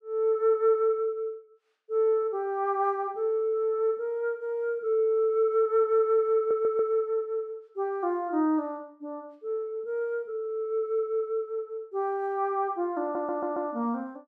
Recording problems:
audio stuttering; at 6.5 s and at 13 s

